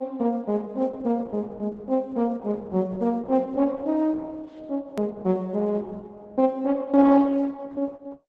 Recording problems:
codec artefacts; Opus, log-spectral distance 2 dB, nothing above 13.1 kHz
hard cut with a click; at 5 s

